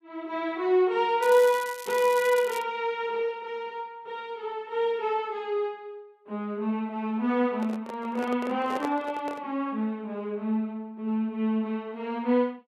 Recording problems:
crackle; from 1 to 2.5 s; loose cable, SNR 14 dB
microphone handling noise; from 7.5 to 9.5 s; peak -3 dB vs average level

